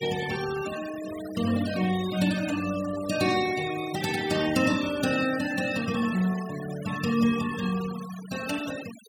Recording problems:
noise reduction artefacts; signal-to-artefact ratio 12 dB

